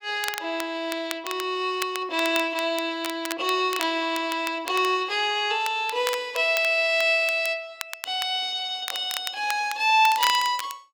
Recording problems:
crackle; vinyl, SNR 12 dB

